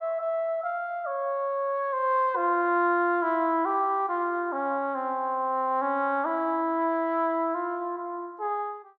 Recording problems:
none

